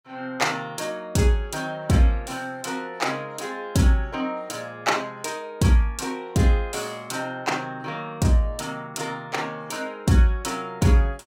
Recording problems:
none

